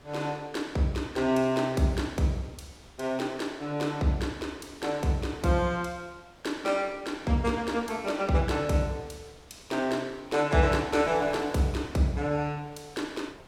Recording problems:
wind on the microphone; below 2.1 kHz, SNR 24 dB

